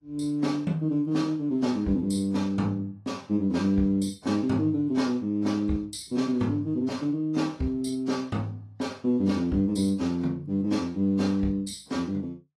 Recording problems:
lossy codec; AAC, log-spectral distance 2 dB, nothing above 12 kHz

